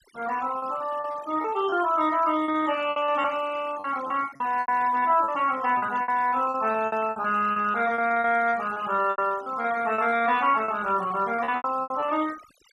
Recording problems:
denoising artefacts; signal-to-artefact ratio 19 dB
packet loss; 15% of the sound replaced, filled with repeated pitch periods

